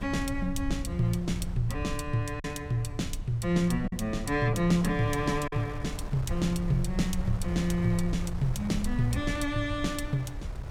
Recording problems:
rumble; below 84 Hz, SNR 8 dB
wind on the microphone; below 1.1 kHz, SNR 17 dB
packet loss; 1.1% of the sound replaced, filled with silence

